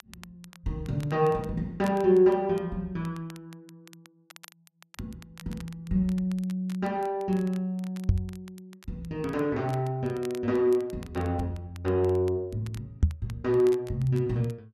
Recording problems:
crackle; vinyl, SNR 25 dB
microphone thump; at 8 s and at 13 s; peak +9 dB vs average level

